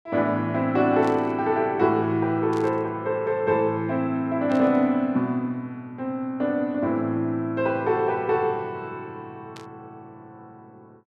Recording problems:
burst of static; 4 times, first at 1 s; peak -14 dB vs average level

